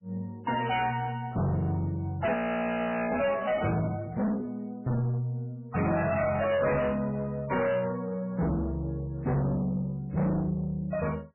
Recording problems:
lossy codec; MP3, log-spectral distance 3 dB, nothing above 2.5 kHz
distorted audio; soft clipping, signal-to-distortion ratio 7 dB
audio freezing; at 2.5 s for 1 s

